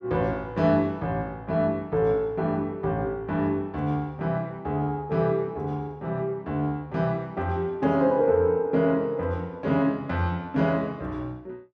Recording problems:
none

